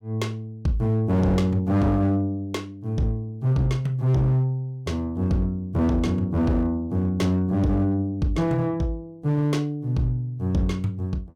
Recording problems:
distorted audio; hard clipping, uneven, signal-to-distortion ratio 12 dB

